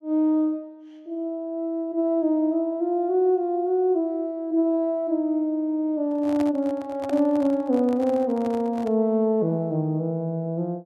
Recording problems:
microphone handling noise; from 6 to 9 s; peak -8 dB vs average level

